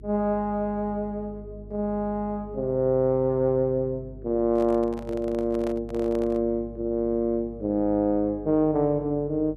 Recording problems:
hum; 50 Hz, harmonics up to 450 Hz, SNR 18 dB
microphone handling noise; from 4.5 to 6.5 s; peak -9 dB vs average level

